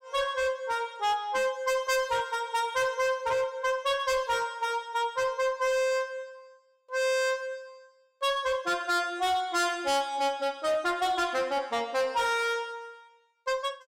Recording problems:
distorted audio; hard clipping, signal-to-distortion ratio 11 dB

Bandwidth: 16.5 kHz